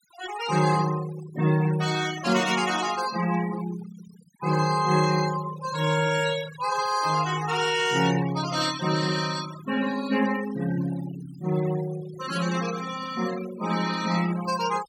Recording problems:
denoising artefacts; signal-to-artefact ratio 12 dB

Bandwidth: 17.5 kHz